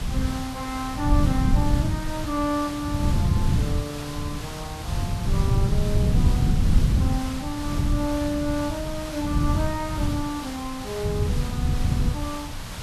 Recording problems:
hiss; slope -2 dB per octave, SNR 7 dB
wind noise; below 140 Hz, SNR -4 dB

